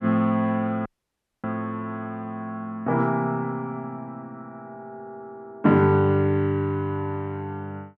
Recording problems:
dropout; at 1 s for 0.5 s

